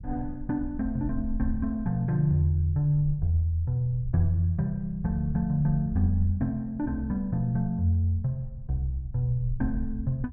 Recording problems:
low-frequency rumble; below 60 Hz, SNR 13 dB

